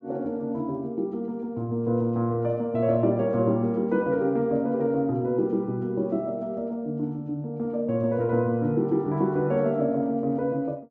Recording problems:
none

